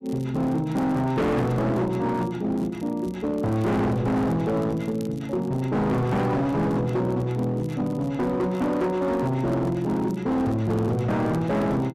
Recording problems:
distorted audio; hard clipping, signal-to-distortion ratio 7 dB
crackling; vinyl, SNR 29 dB

